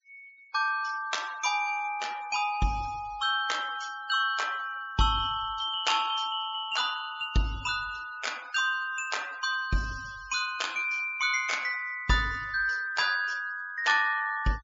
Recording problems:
low-pass filter; nothing above 7.3 kHz
noise reduction artefacts; signal-to-artefact ratio 19 dB

